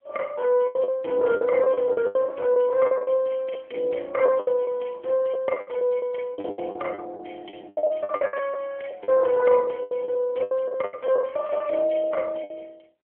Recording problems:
telephone audio; 340 Hz to 3.1 kHz, AMR-NB
packet loss; 15% of the sound replaced, filled with the last packet

